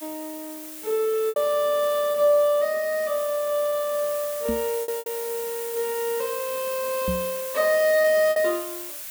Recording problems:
hiss; slope +2 dB per octave, SNR 10 dB
lost packets; 4% of the sound replaced, filled with repeated pitch periods
knock on the microphone; at 4.5 s and at 7 s; peak -2 dB vs average level

